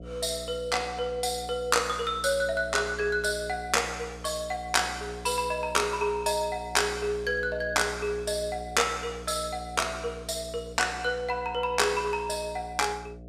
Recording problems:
hum; 60 Hz, harmonics up to 720 Hz, SNR 16 dB

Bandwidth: 15 kHz